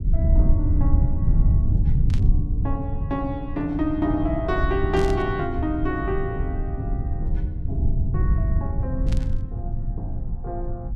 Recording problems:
low-frequency rumble; below 98 Hz, SNR -3 dB
burst of static; at 2 s, at 5 s and at 9 s; peak -7 dB vs average level

